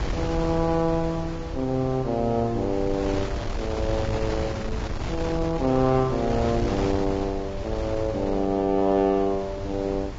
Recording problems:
lossy codec; Vorbis, log-spectral distance 2 dB
wind on the microphone; below 440 Hz, SNR 7 dB

